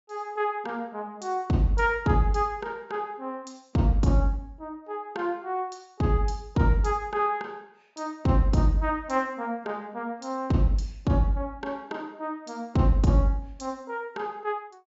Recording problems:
treble missing; nothing above 8 kHz

